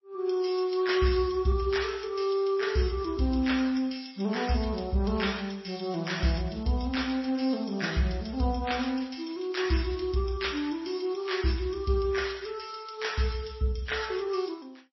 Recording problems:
lossy compression; MP3, then MP3, log-spectral distance 5 dB, nothing above 5.7 kHz

